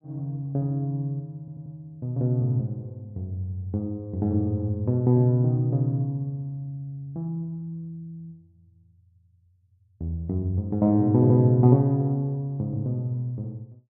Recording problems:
audio stuttering; at 1.5 s

